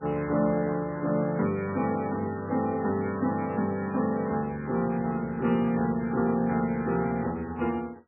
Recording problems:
codec artefacts; MP3, log-spectral distance 3 dB, nothing above 2.4 kHz

